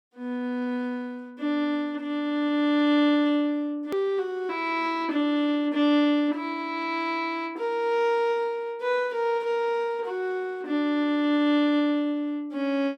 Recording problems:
edit click; at 4 s

